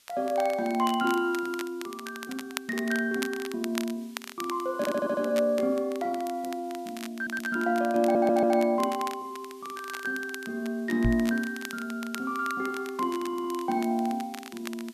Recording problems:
hiss; slope +2 dB per octave, SNR 27 dB
crackle; vinyl, SNR 14 dB
stutter; 4 times, first at 5 s
microphone bump; at 11 s; peak +5 dB vs average level

